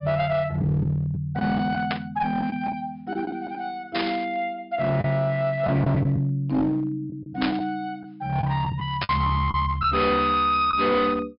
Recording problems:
treble missing; nothing above 5.5 kHz
distortion; hard clipping, uneven, signal-to-distortion ratio 10 dB
packet loss; 5% of the sound replaced, filled with the last packet
static burst; 4 times, first at 2 s; peak +1 dB vs average level

